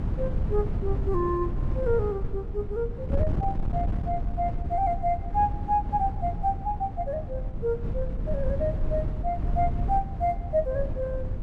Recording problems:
wind noise; below 110 Hz, SNR 2 dB

